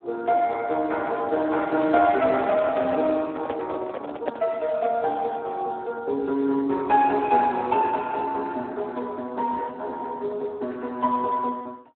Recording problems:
phone line; 220 Hz to 2.7 kHz, Speex
microphone handling noise; from 2 to 4.5 s; peak +1 dB vs average level

